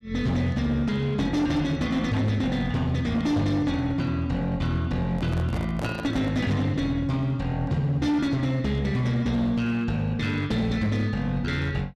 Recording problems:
distorted audio; hard clipping, uneven, signal-to-distortion ratio 12 dB
handling noise; from 5 to 6.5 s; peak -4 dB vs average level

